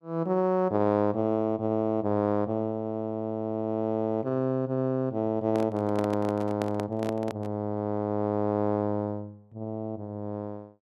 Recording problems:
microphone handling noise; from 5.5 to 7.5 s; peak -2 dB vs average level

